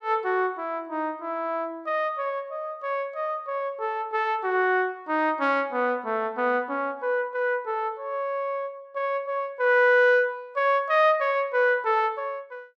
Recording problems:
none

